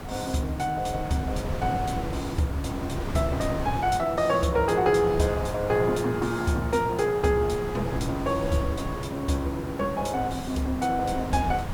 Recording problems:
background hiss; SNR 12 dB
wind noise; below 250 Hz, SNR 10 dB

